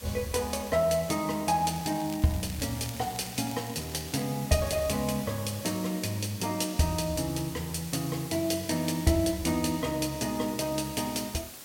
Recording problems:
background hiss; slope -1 dB per octave, SNR 13 dB
crackle; from 1.5 to 4 s; loose cable, SNR 18 dB

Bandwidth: 16.5 kHz